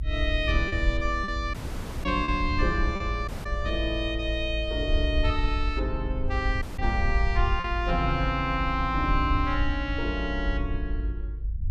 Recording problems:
rumble; below 70 Hz, SNR 2 dB
packet loss; 1.8% of the sound replaced, filled with repeated pitch periods
audio cutting out; at 1.5 s for 0.5 s, at 3.5 s and at 6.5 s

